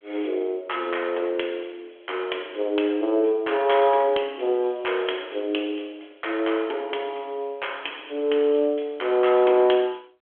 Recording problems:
phone line; 280 Hz to 3.4 kHz, G.726

